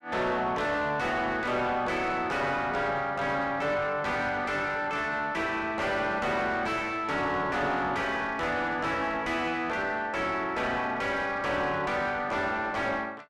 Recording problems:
distorted audio; soft clipping, signal-to-distortion ratio 7 dB

